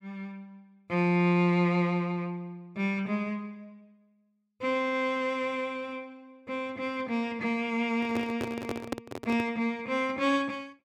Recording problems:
handling noise; from 8 to 9.5 s; peak +1 dB vs average level

